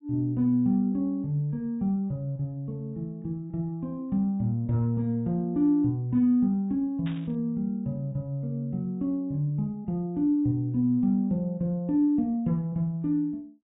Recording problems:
treble cut off; nothing above 4 kHz
burst of static; at 7 s; peak -13 dB vs average level

